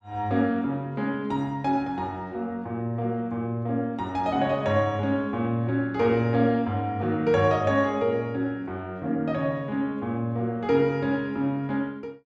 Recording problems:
none

